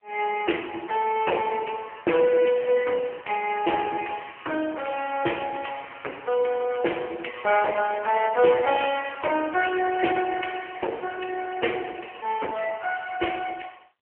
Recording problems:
phone line; 280 Hz to 3 kHz, AMR-NB

